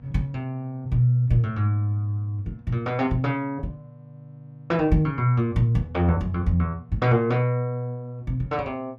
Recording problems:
electrical hum; 60 Hz, harmonics up to 720 Hz, SNR 24 dB

